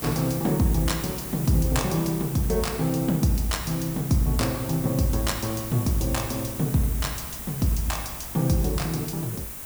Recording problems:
hum; 50 Hz, harmonics up to 1.1 kHz, SNR 25 dB
background hiss; slope -2 dB per octave, SNR 9 dB
wind noise; below 280 Hz, SNR 23 dB

